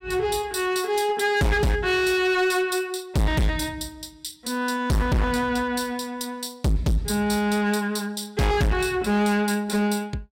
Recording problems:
distortion; hard clipping, signal-to-distortion ratio 7 dB

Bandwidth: 16 kHz